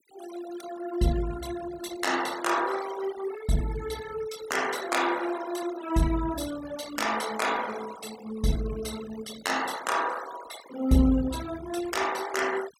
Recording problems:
denoising artefacts; signal-to-artefact ratio 13 dB

